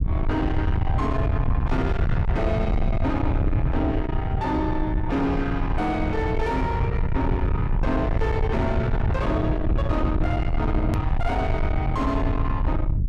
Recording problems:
distortion; soft clipping, signal-to-distortion ratio 7 dB
rumble; below 130 Hz, SNR -1 dB
click at an edit; at 11 s

